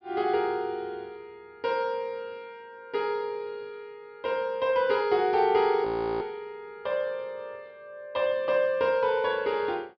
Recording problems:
low-pass filter; nothing above 5.5 kHz
audio freezing; at 6 s

